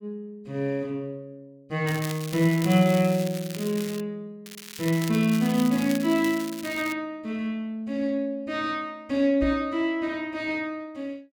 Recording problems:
crackle; from 2 to 4 s and from 4.5 to 7 s; loose cable, SNR 13 dB
knock on the microphone; at 9.5 s; peak -3 dB vs average level

